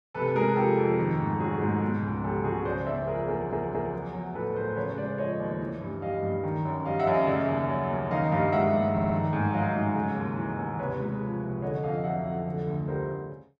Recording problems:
audio stuttering; at 3.5 s and at 9 s

